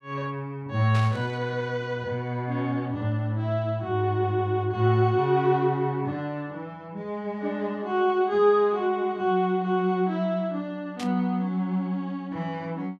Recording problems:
burst of static; at 1 s and at 11 s; peak -8 dB vs average level

